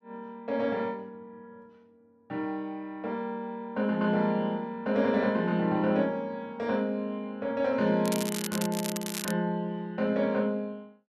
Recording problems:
crackle; from 8 to 9.5 s; loose cable, SNR 6 dB

